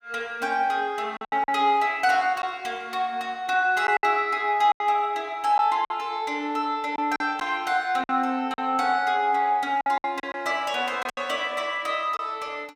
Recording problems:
lost packets; 6% of the sound replaced, filled with silence

